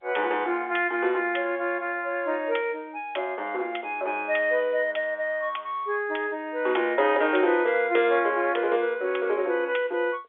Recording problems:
phone line; 320 Hz to 3.6 kHz, G.711

